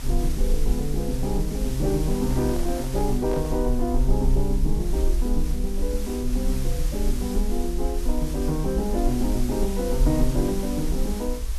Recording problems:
hiss; slope -1 dB per octave, SNR 12 dB
rumble; below 50 Hz, strongest tone 24 Hz, SNR 2 dB
microphone handling noise; from 2 to 3.5 s; peak -5 dB vs average level

